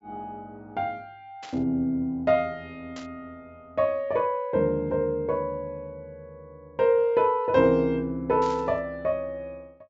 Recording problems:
low-pass filter; nothing above 8 kHz
static burst; at 1.5 s, at 3 s and at 8.5 s; peak -13 dB vs average level

